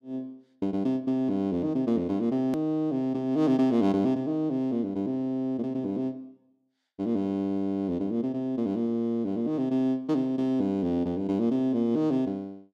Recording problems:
edit click; at 2.5 s

